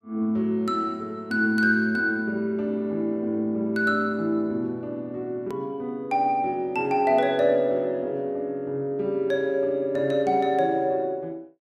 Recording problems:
hard cut with a click; at 5.5 s

